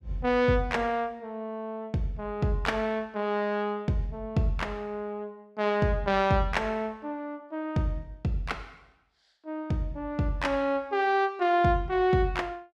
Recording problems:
none

